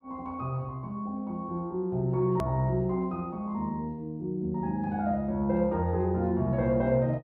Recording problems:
click at an edit; at 2.5 s

